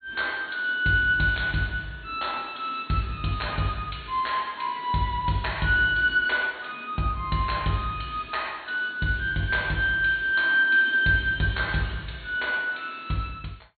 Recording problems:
treble missing; nothing above 4.4 kHz

